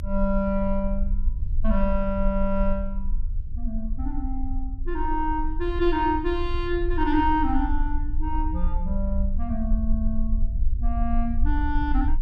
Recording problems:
rumble; below 50 Hz, strongest tone 20 Hz, SNR 2 dB

